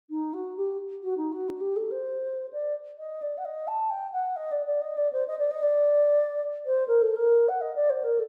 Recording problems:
edit click; at 1.5 s

